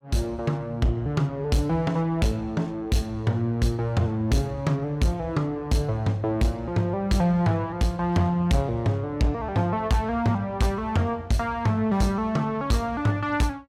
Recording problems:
distortion; hard clipping, signal-to-distortion ratio 11 dB

